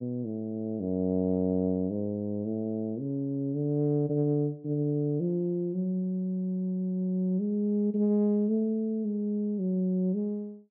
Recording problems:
none

